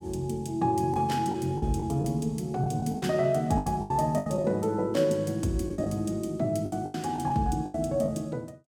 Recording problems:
packet loss; 10% of the sound replaced, filled with the last packet

